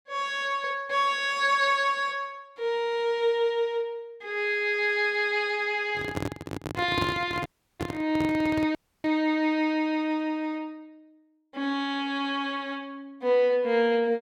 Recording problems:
handling noise; from 6 to 9 s; peak 0 dB vs average level
dropout; at 7.5 s and at 9 s

